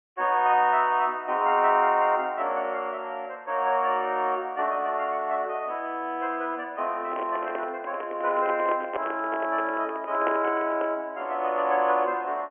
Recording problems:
telephone audio; 240 Hz to 3.2 kHz, G.726
handling noise; from 7 to 11 s; peak 0 dB vs average level

